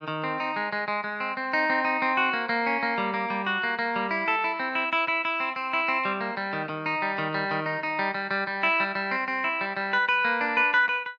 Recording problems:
none

